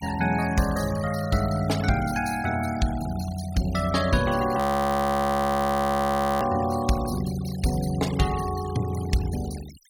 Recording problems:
denoising artefacts; signal-to-artefact ratio 15 dB
audio freezing; at 4.5 s for 2 s

